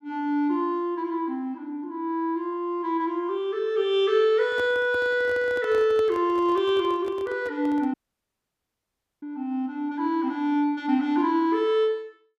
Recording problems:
microphone handling noise; from 4.5 to 8 s; peak -8 dB vs average level
audio cutting out; at 8 s for 1.5 s

